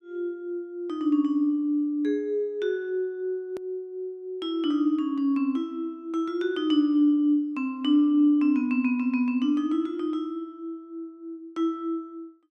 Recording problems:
hard cut with a click; at 3.5 s

